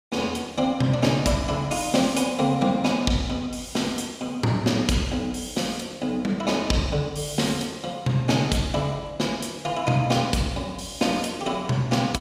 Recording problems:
none

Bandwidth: 15.5 kHz